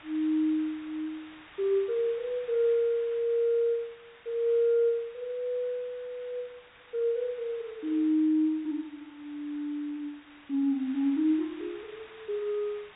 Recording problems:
treble missing; nothing above 4 kHz
hiss; SNR 22 dB

